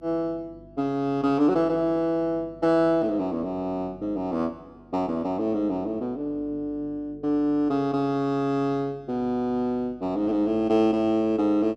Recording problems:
electrical hum; 50 Hz, harmonics up to 350 Hz, SNR 25 dB

